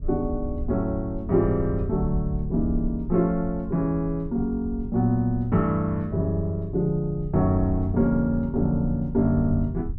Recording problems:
low-frequency rumble; below 80 Hz, SNR 10 dB

